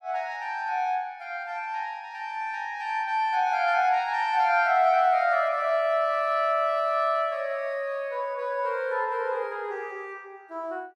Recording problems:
none

